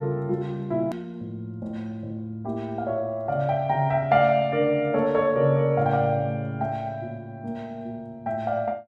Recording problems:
edit click; at 1 s

